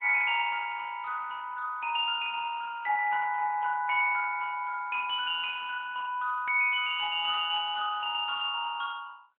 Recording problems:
phone line; 190 Hz to 3.6 kHz, AMR-NB

